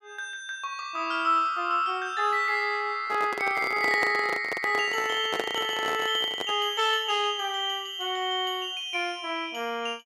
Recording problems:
handling noise; from 3 to 6.5 s; peak 0 dB vs average level

